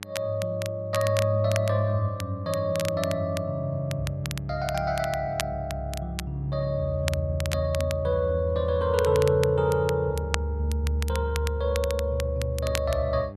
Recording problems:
electrical hum; 50 Hz, harmonics up to 900 Hz, SNR 17 dB
crackling; vinyl, SNR 12 dB

